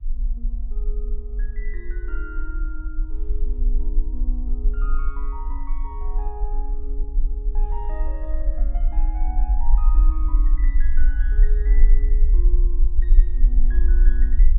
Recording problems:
treble cut off; nothing above 4 kHz
rumble; below 42 Hz, strongest tone 20 Hz, SNR -16 dB
wind noise; below 96 Hz, SNR 13 dB

